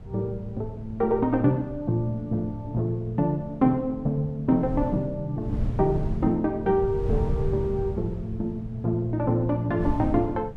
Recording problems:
wind noise; below 130 Hz, SNR 9 dB

